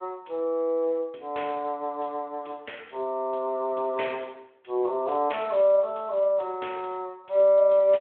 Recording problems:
telephone audio; 260 Hz to 3.6 kHz, Speex

